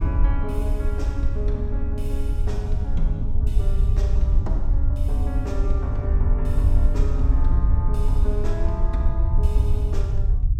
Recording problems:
low-frequency rumble; below 68 Hz, SNR -9 dB

